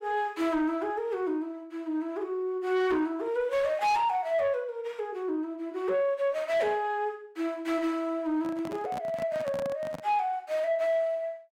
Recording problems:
distortion; soft clipping, signal-to-distortion ratio 11 dB
microphone handling noise; from 8.5 to 10 s; peak -6 dB vs average level

